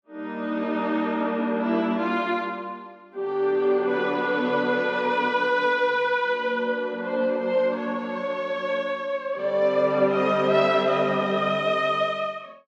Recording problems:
none

